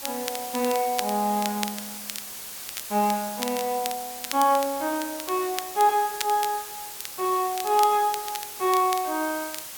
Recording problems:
background hiss; slope 0 dB per octave, SNR 9 dB
crackle; vinyl, SNR 11 dB

